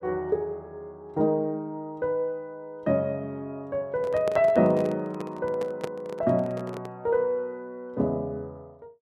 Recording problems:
handling noise; from 4 to 7 s; peak -1 dB vs average level

